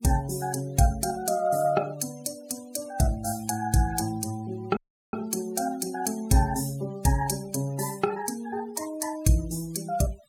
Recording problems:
denoising artefacts; signal-to-artefact ratio 20 dB
audio cutting out; at 5 s

